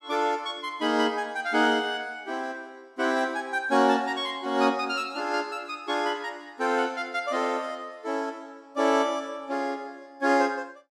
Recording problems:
none

